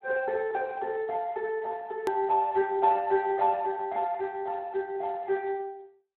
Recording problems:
telephone audio; 260 Hz to 3.5 kHz, Speex
edit click; at 2 s

